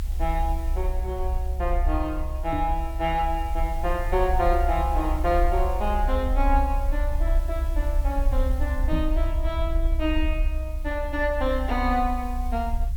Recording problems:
hiss; slope 0 dB per octave, SNR 22 dB
rumble; below 62 Hz, strongest tone 34 Hz, SNR 0 dB
knock on the microphone; at 2.5 s and at 9 s; peak +2 dB vs average level

